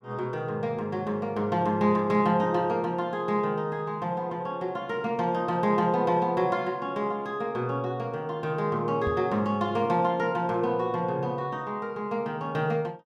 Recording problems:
microphone bump; at 9 s; peak -2 dB vs average level

